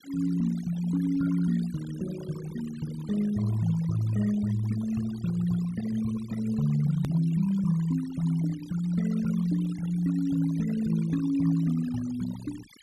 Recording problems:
noise reduction artefacts; signal-to-artefact ratio 18 dB
click at an edit; at 7 s

